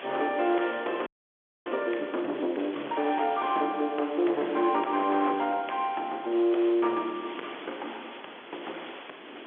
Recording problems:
phone line; 260 Hz to 3.5 kHz, G.711
distortion; hard clipping, signal-to-distortion ratio 14 dB
hiss; SNR 16 dB
wind noise; below 650 Hz, SNR 23 dB
frozen audio; at 1 s for 0.5 s

